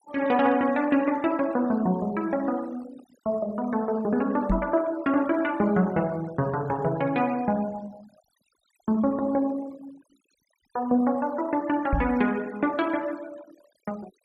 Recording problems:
noise reduction artefacts; signal-to-artefact ratio 23 dB
knock on the microphone; at 4.5 s and at 12 s; peak +4 dB vs average level

